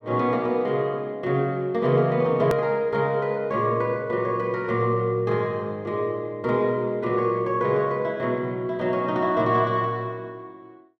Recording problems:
click at an edit; at 2.5 s

